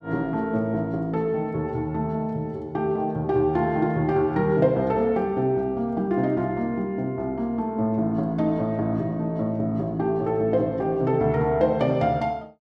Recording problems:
none

